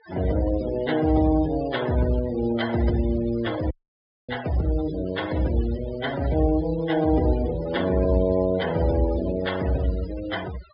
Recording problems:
treble missing; nothing above 5.1 kHz
denoising artefacts; signal-to-artefact ratio 14 dB
audio cutting out; at 3.5 s for 0.5 s

